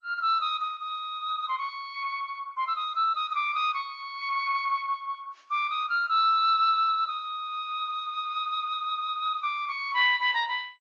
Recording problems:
codec artefacts; MP3, then MP2, log-spectral distance 3 dB

